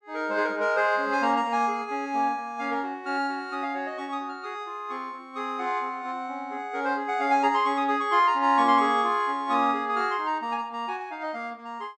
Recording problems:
none

